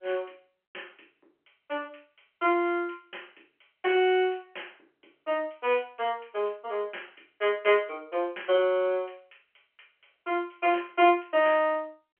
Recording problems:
telephone audio; 300 Hz to 3.2 kHz, G.711

